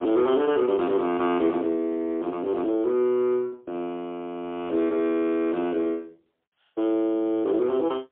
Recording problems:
telephone audio; 280 Hz to 3.7 kHz, AMR-NB, then MP3

